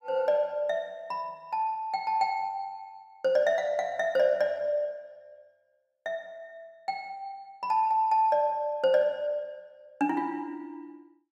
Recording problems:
none

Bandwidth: 14.5 kHz